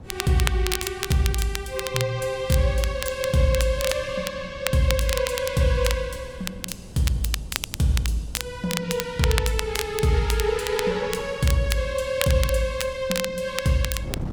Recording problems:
wind noise; below 220 Hz, SNR 18 dB
crackling; vinyl, SNR 7 dB

